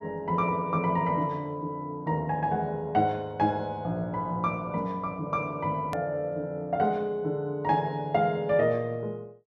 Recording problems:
edit click; at 6 s

